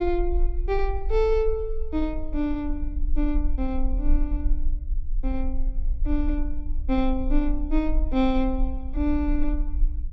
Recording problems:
low-frequency rumble; below 40 Hz, strongest tone 20 Hz, SNR 2 dB

